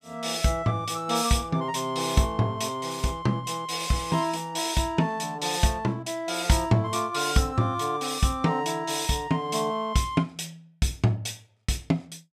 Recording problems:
none

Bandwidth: 14.5 kHz